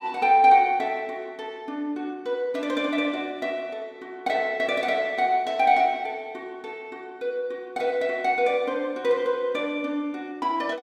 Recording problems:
none

